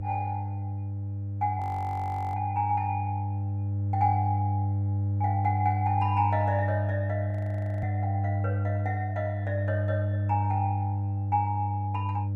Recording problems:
hum; 50 Hz, harmonics up to 500 Hz, SNR -1 dB
audio freezing; at 1.5 s for 0.5 s and at 7.5 s for 0.5 s

